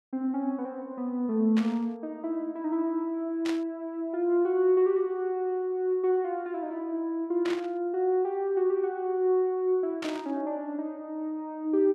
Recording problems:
burst of static; 4 times, first at 1.5 s; peak -5 dB vs average level

